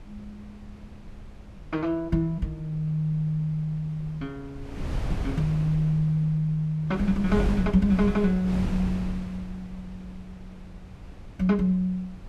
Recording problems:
wind noise; below 150 Hz, SNR 11 dB

